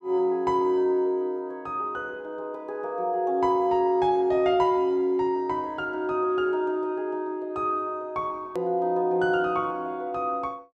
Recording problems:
hard cut with a click; at 8.5 s

